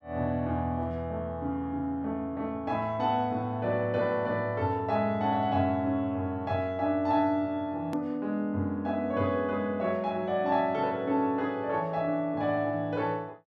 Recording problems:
edit click; at 8 s

